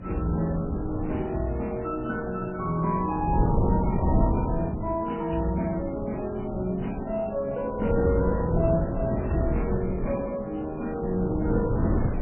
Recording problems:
codec artefacts; MP3, log-spectral distance 4 dB, nothing above 2.9 kHz
wind on the microphone; below 270 Hz, SNR 1 dB

